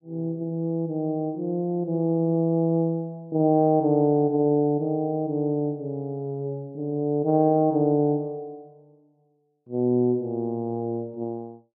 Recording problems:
none

